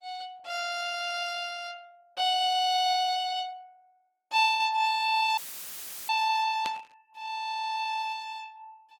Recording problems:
lossy compression; Opus, log-spectral distance 3 dB
audio cutting out; at 5.5 s for 0.5 s; filled with static
burst of static; at 6.5 s; peak -5 dB vs average level

